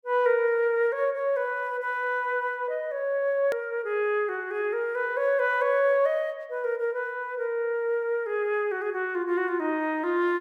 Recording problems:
hard cut with a click; at 3.5 s

